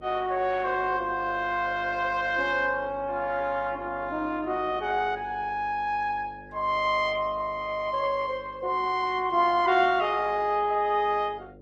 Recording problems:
lossy codec; Opus, log-spectral distance 3 dB
hum; 50 Hz, harmonics up to 600 Hz, SNR 22 dB

